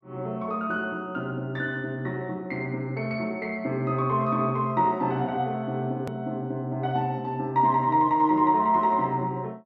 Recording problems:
hard cut with a click; at 6 s

